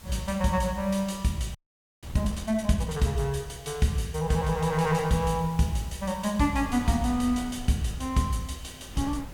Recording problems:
hiss; slope -1 dB per octave, SNR 24 dB
wind on the microphone; below 240 Hz, SNR 18 dB
audio freezing; at 1.5 s

